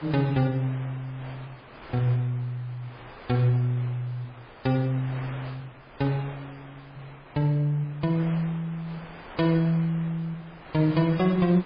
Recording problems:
codec artefacts; MP3, log-spectral distance 3 dB, nothing above 4.8 kHz
wind noise; below 2 kHz, SNR 18 dB

